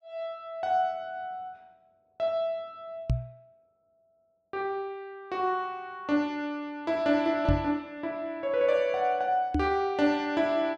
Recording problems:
knock on the microphone; at 3 s, at 7.5 s and at 9.5 s; peak +5 dB vs average level

